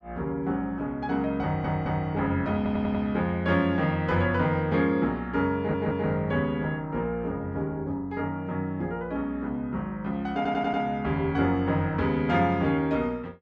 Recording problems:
stutter; 4 times, first at 1.5 s

